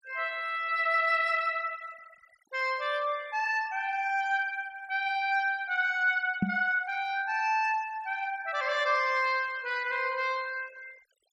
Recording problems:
noise reduction artefacts; signal-to-artefact ratio 24 dB
microphone thump; at 6.5 s; peak +5 dB vs average level

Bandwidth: 14.5 kHz